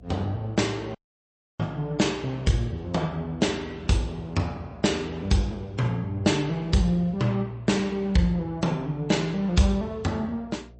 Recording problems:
lossy codec; MP3, log-spectral distance 2 dB, nothing above 8.2 kHz
electrical hum; 60 Hz, harmonics up to 720 Hz, SNR 23 dB
audio cutting out; at 1 s for 0.5 s

